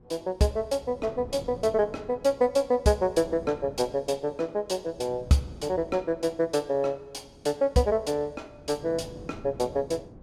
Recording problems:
wind on the microphone; below 360 Hz, SNR 20 dB

